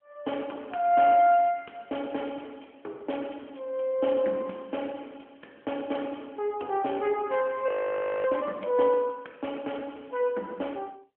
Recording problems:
telephone audio; 260 Hz to 3.2 kHz, AMR-NB
frozen audio; at 7.5 s for 0.5 s

